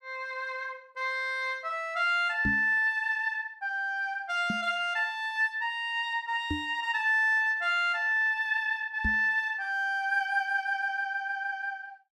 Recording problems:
knock on the microphone; 4 times, first at 2.5 s; peak 0 dB vs average level

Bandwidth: 12.5 kHz